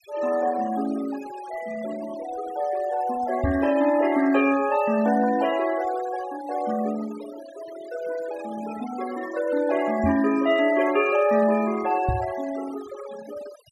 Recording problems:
denoising artefacts; signal-to-artefact ratio 16 dB
microphone thump; at 3.5 s, at 10 s and at 12 s; peak +3 dB vs average level

